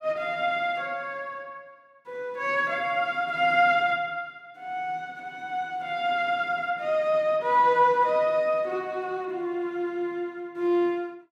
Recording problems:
none

